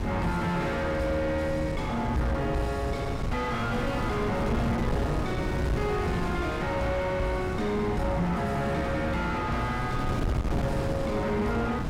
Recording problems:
distorted audio; soft clipping, signal-to-distortion ratio 8 dB
wind noise; below 410 Hz, SNR 2 dB

